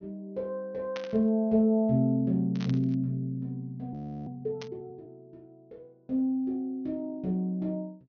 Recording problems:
low-pass filter; nothing above 6.4 kHz
static burst; at 1 s, at 2.5 s and at 4.5 s; peak -7 dB vs average level
frozen audio; at 4 s

